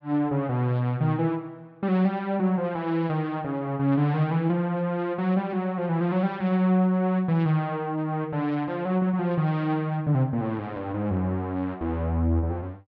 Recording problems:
none

